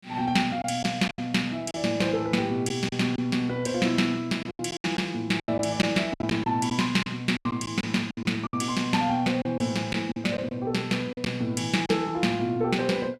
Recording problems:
lost packets; 8% of the sound replaced, filled with silence

